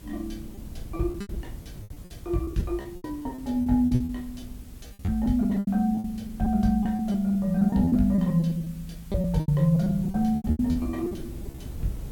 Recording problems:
hiss; slope -1 dB per octave, SNR 27 dB
rumble; below 140 Hz, SNR 17 dB
packet loss; 17% of the sound replaced, filled with repeated pitch periods

